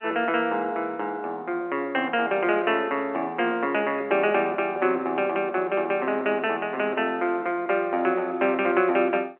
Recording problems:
phone line; 220 Hz to 3.2 kHz, G.711

